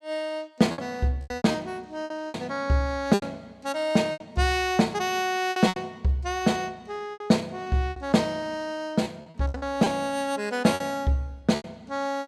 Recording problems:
packet loss; 10% of the sound replaced, filled with repeated pitch periods

